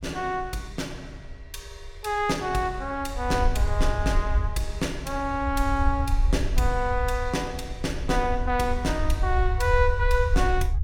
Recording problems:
rumble; below 70 Hz, SNR 2 dB

